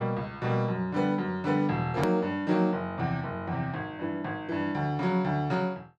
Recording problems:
click at an edit; at 2 s

